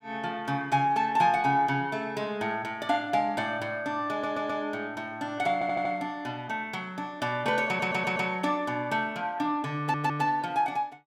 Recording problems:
audio stuttering; 4 times, first at 4 s

